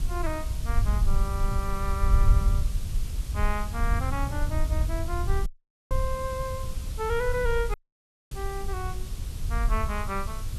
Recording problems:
hiss; SNR 11 dB
low-frequency rumble; below 66 Hz, SNR -3 dB
wind on the microphone; below 100 Hz, SNR 7 dB
audio cutting out; at 5.5 s and at 7.5 s for 0.5 s

